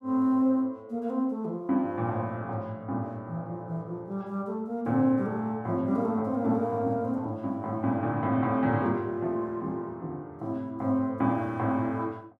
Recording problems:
none

